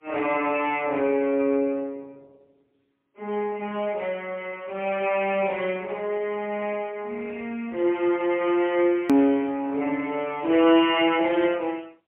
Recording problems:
telephone audio; 240 Hz to 3.5 kHz, AMR-NB, then MP3
edit click; at 9 s

